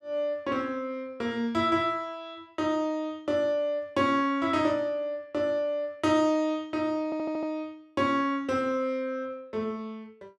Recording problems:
audio stuttering; at 7 s

